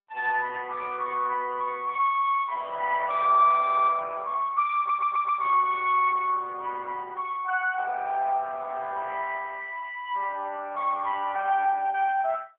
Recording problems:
telephone audio; 320 Hz to 2.9 kHz, AMR-NB
stutter; at 5 s

